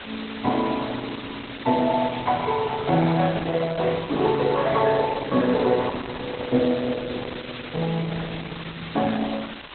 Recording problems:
lossy compression; Opus, log-spectral distance 17 dB, nothing above 4 kHz
hiss; SNR 13 dB
microphone handling noise; from 4 to 7.5 s; peak -5 dB vs average level

